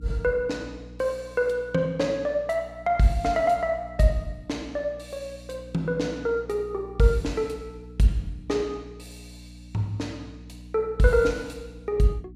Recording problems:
hum; 60 Hz, harmonics up to 300 Hz, SNR 19 dB

